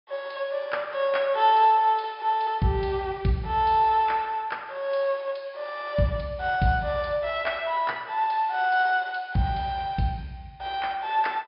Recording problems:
treble missing; nothing above 5.5 kHz

